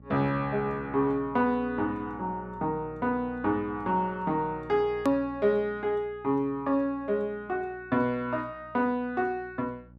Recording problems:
hum; 60 Hz, harmonics up to 600 Hz, SNR 21 dB
edit click; at 5 s

